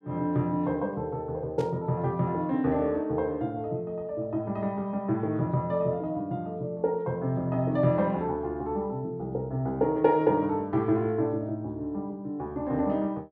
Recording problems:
static burst; at 1.5 s; peak -14 dB vs average level

